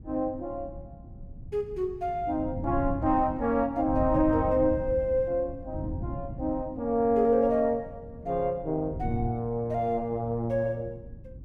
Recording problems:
wind noise; below 140 Hz, SNR 12 dB

